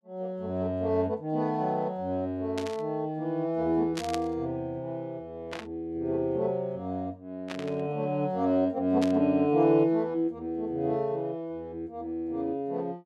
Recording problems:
static burst; 5 times, first at 2.5 s; peak -3 dB vs average level

